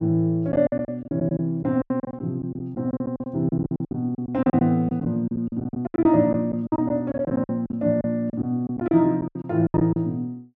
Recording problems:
packet loss; 17% of the sound replaced, filled with silence

